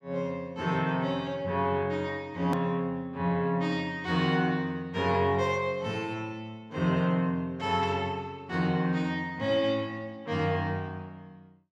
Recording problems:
edit click; at 2.5 s

